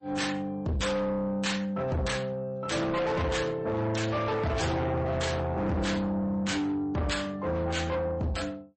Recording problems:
lossy codec; MP3, then MP3, log-spectral distance 2 dB, nothing above 8.2 kHz
distortion; soft clipping, signal-to-distortion ratio 6 dB

